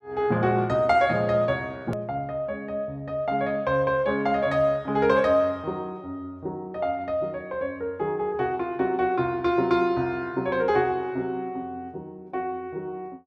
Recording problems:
edit click; at 2 s

